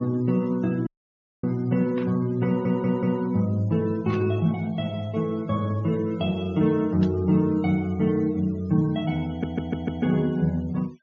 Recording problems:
treble cut off; nothing above 6.9 kHz
noise reduction artefacts; signal-to-artefact ratio 26 dB
dropout; at 1 s for 0.5 s
burst of static; at 2 s, at 4 s and at 7 s; peak -12 dB vs average level
audio stuttering; at 2.5 s and at 9.5 s

